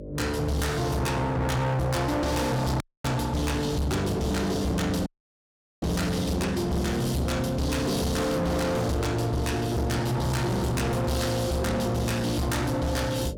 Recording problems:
distortion; hard clipping, signal-to-distortion ratio 7 dB
hum; 50 Hz, harmonics up to 600 Hz, SNR 15 dB
dropout; at 3 s and at 5 s for 1 s

